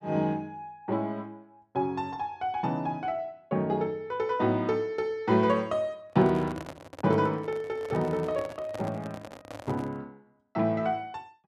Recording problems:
handling noise; from 6 to 10 s; peak -6 dB vs average level

